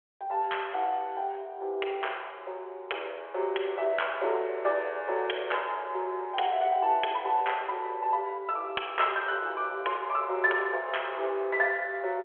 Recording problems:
telephone audio; 340 Hz to 3.4 kHz, G.726

